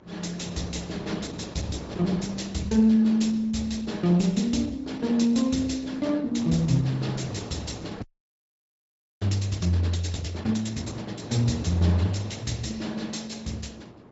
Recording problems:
treble missing; nothing above 7.6 kHz
lossy codec; Opus, log-spectral distance 5 dB
electrical hum; 60 Hz, harmonics up to 2.3 kHz, SNR 31 dB
wind noise; below 570 Hz, SNR 16 dB
frozen audio; at 8 s for 1 s

